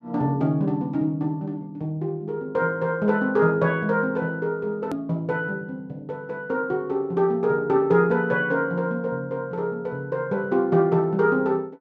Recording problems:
hard cut with a click; at 5 s

